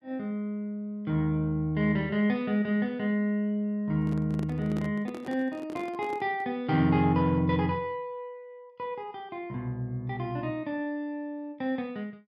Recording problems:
microphone handling noise; from 4 to 6.5 s; peak -5 dB vs average level

